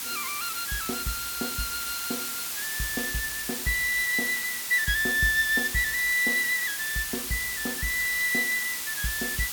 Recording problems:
background hiss; slope +2 dB per octave, SNR 3 dB

